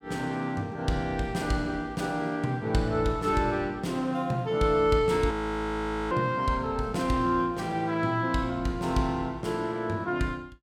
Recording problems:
frozen audio; at 5.5 s for 1 s

